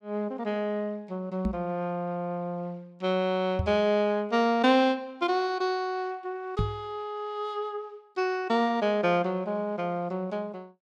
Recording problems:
knock on the microphone; at 1.5 s, at 3.5 s and at 6.5 s; peak +3 dB vs average level

